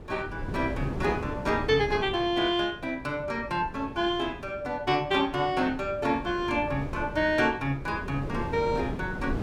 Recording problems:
wind noise; below 390 Hz, SNR 10 dB

